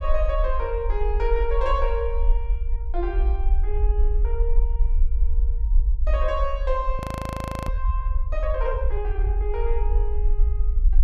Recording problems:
rumble; below 50 Hz, SNR -4 dB
audio freezing; at 7 s for 0.5 s

